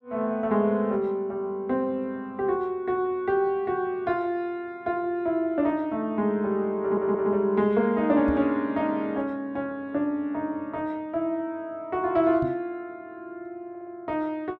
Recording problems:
audio stuttering; at 7 s and at 14 s
microphone thump; at 8.5 s and at 12 s; peak -2 dB vs average level

